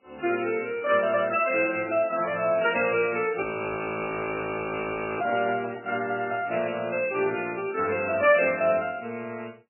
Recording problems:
codec artefacts; AAC, then MP3, log-spectral distance 5 dB, nothing above 2.4 kHz
frozen audio; at 3.5 s for 2 s
handling noise; at 5 s; peak -8 dB vs average level

